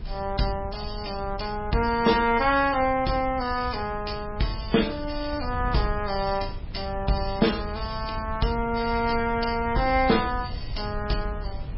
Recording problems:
lossy codec; MP3, log-spectral distance 6 dB, nothing above 5.3 kHz
wind noise; below 98 Hz, SNR 11 dB

